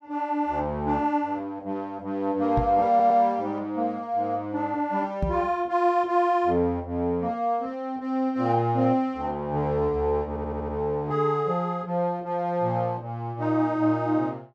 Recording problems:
knock on the microphone; at 2.5 s and at 5 s; peak +2 dB vs average level
audio stuttering; at 3 s and at 10 s

